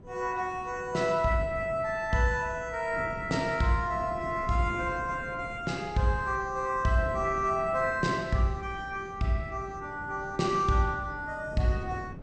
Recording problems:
codec artefacts; MP2, log-spectral distance 2 dB, nothing above 8 kHz
wind noise; below 320 Hz, SNR 15 dB

